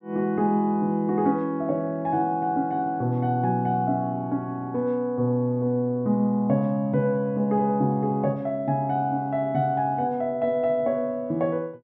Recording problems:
none

